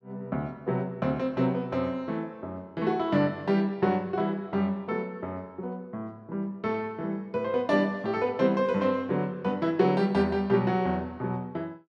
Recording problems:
none

